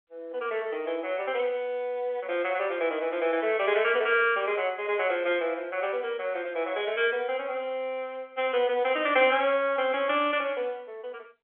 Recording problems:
phone line; 300 Hz to 3.5 kHz, G.711

